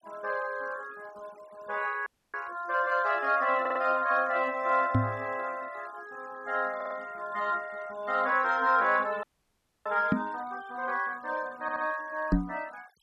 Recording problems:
noise reduction artefacts; signal-to-artefact ratio 23 dB
dropout; at 2 s and at 9 s for 0.5 s
audio stuttering; at 3.5 s, at 7 s and at 12 s
microphone thump; at 5 s, at 10 s and at 12 s; peak +8 dB vs average level

